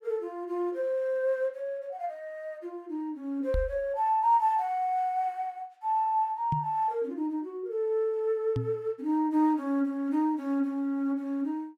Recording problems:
microphone thump; at 3.5 s, at 6.5 s and at 8.5 s; peak +1 dB vs average level

